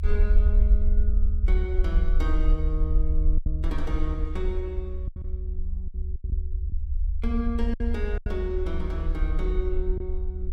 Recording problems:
rumble; below 60 Hz, SNR -6 dB
lost packets; 5% of the sound replaced, filled with silence

